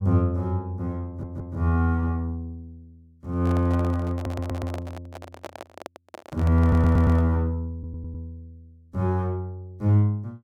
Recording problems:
stutter; 4 times, first at 1 s
handling noise; from 3.5 to 7.5 s; peak -7 dB vs average level

